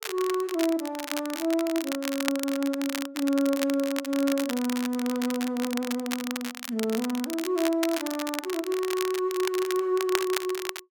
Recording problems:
crackle; vinyl, SNR 7 dB

